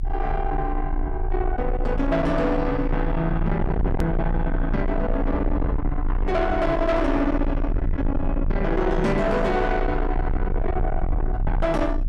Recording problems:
distorted audio; soft clipping, signal-to-distortion ratio 6 dB
low-frequency rumble; below 82 Hz, strongest tone 28 Hz, SNR 3 dB
hard cut with a click; at 4 s

